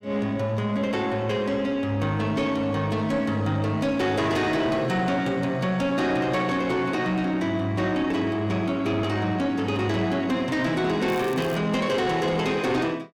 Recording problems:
distortion; soft clipping, signal-to-distortion ratio 12 dB
crackle; at 11 s; loose cable, SNR 21 dB

